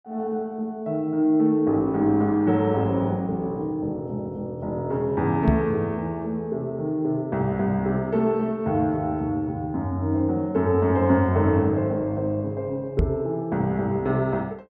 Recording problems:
knock on the microphone; at 5.5 s and at 13 s; peak +5 dB vs average level

